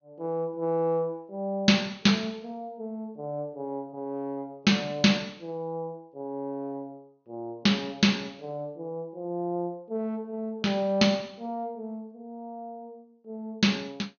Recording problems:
treble missing; nothing above 6.5 kHz

